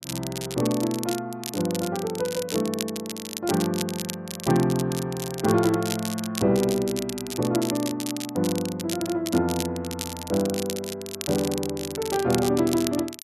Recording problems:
crackle; vinyl, SNR 8 dB

